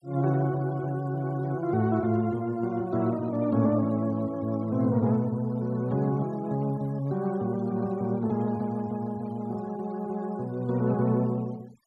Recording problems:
noise reduction artefacts; signal-to-artefact ratio 25 dB

